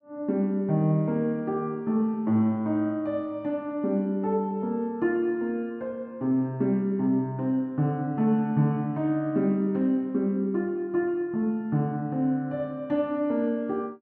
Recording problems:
none

